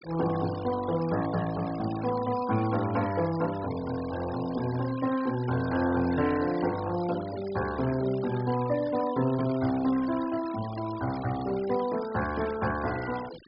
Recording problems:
treble missing; nothing above 5.5 kHz
noise reduction artefacts; signal-to-artefact ratio 16 dB

